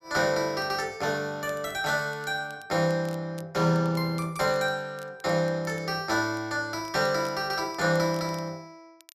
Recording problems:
crackle; vinyl, SNR 27 dB

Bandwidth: 14 kHz